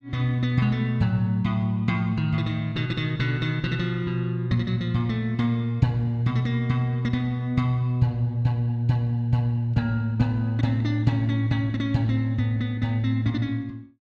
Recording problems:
none

